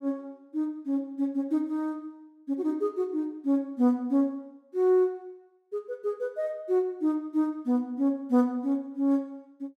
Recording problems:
none

